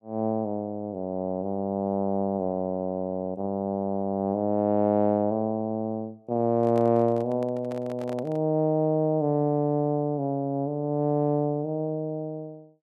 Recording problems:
handling noise; from 6.5 to 8.5 s; peak -9 dB vs average level

